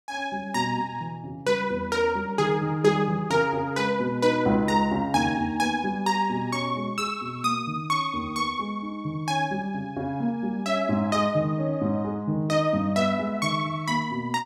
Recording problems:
none

